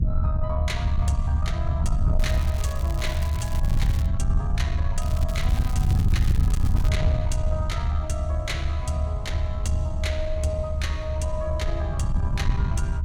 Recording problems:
distortion; soft clipping, signal-to-distortion ratio 11 dB
low-frequency rumble; below 94 Hz, SNR -6 dB
crackle; from 2 to 4 s and from 5 to 7 s; loose cable, SNR 10 dB

